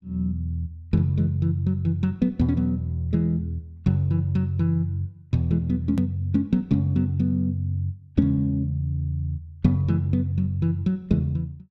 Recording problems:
click at an edit; at 6 s

